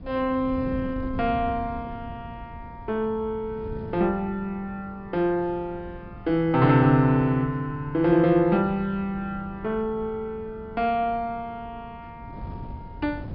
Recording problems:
treble missing; nothing above 5.5 kHz
wind noise; below 190 Hz, SNR 16 dB

